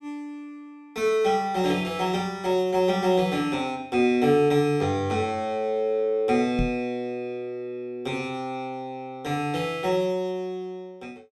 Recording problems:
microphone bump; at 6.5 s; peak +1 dB vs average level

